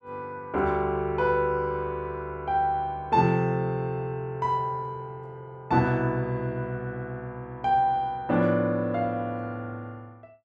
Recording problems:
none

